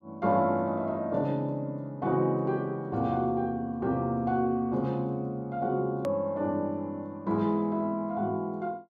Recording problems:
click at an edit; at 6 s

